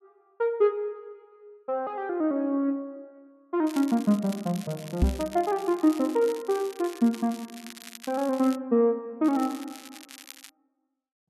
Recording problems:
crackling; from 3.5 to 8.5 s and from 9 to 10 s; loose cable, SNR 18 dB
microphone bump; at 5 s; peak +7 dB vs average level

